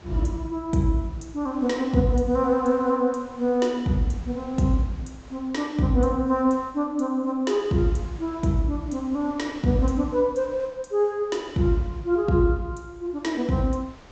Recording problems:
treble missing; nothing above 8 kHz
wind on the microphone; below 1.6 kHz, SNR 25 dB

